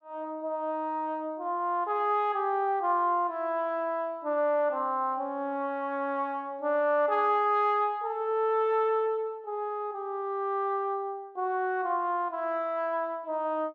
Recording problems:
none

